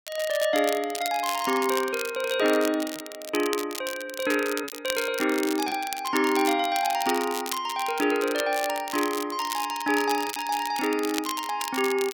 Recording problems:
crackling; vinyl, SNR 9 dB
packet loss; 2% of the sound replaced, filled with repeated pitch periods

